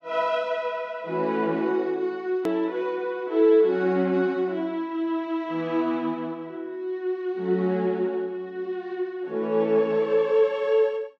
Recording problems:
hard cut with a click; at 2.5 s

